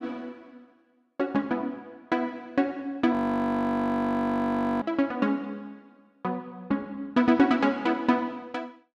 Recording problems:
frozen audio; at 3 s for 1.5 s

